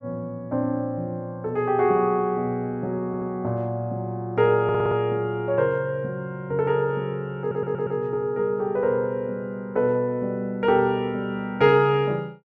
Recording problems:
audio stuttering; at 3 s, at 4.5 s and at 7.5 s

